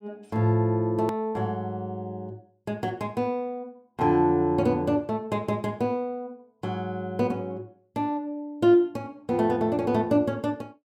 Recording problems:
click at an edit; at 1 s

